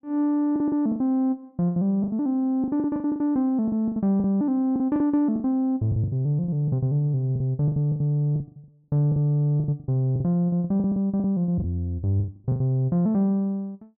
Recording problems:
packet loss; 16% of the sound replaced, filled with the last packet

